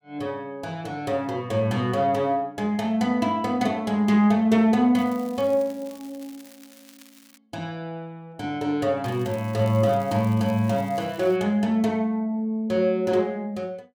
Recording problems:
crackling; from 5 to 7.5 s and from 9 to 11 s; loose cable, SNR 25 dB

